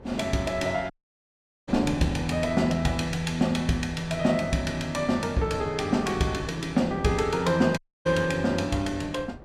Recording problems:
wind on the microphone; below 450 Hz, SNR 17 dB
dropout; at 1 s for 1 s and at 8 s

